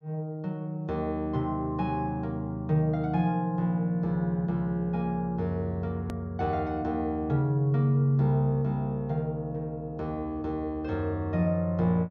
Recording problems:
treble missing; nothing above 6.9 kHz
edit click; at 6 s

